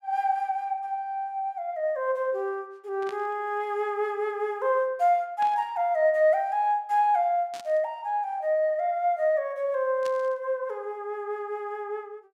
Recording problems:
burst of static; 4 times, first at 3 s; peak -11 dB vs average level

